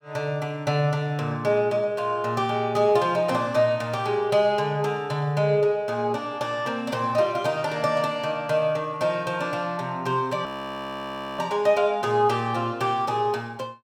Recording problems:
frozen audio; at 10 s for 1 s

